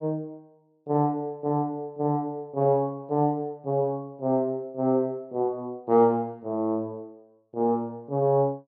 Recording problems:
none

